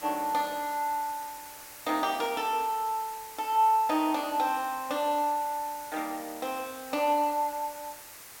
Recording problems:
background hiss; SNR 15 dB

